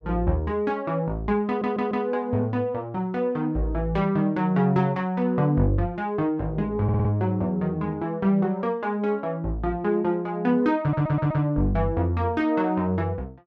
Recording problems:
stutter; at 1.5 s, at 7 s and at 11 s

